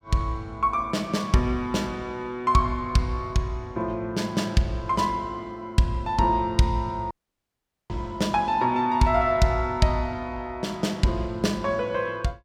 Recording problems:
dropout; at 7 s for 1 s

